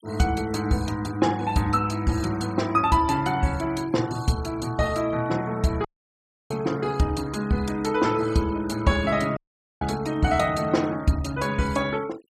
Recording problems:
denoising artefacts; signal-to-artefact ratio 20 dB
audio cutting out; at 6 s for 0.5 s and at 9.5 s

